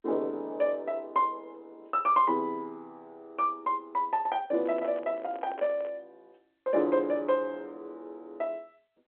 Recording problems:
telephone audio; 260 Hz to 3.6 kHz, G.711
handling noise; from 4.5 to 6 s; peak -7 dB vs average level

